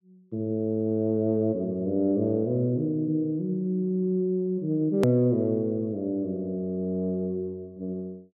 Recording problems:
click at an edit; at 5 s

